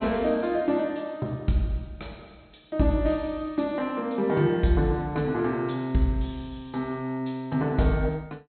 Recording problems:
treble missing; nothing above 4.2 kHz

